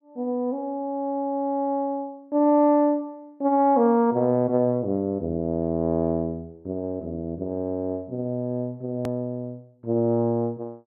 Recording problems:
edit click; at 9 s

